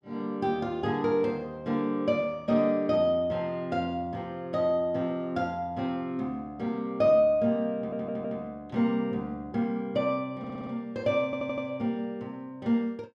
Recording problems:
audio stuttering; at 8 s, at 10 s and at 11 s

